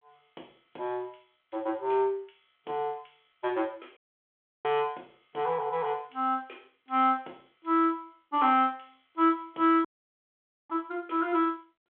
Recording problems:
phone line; 280 Hz to 3.6 kHz, G.726
dropout; at 4 s for 0.5 s and at 10 s for 1 s

